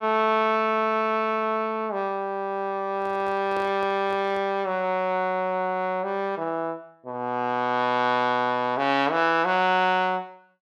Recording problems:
microphone handling noise; from 3 to 4.5 s; peak -10 dB vs average level

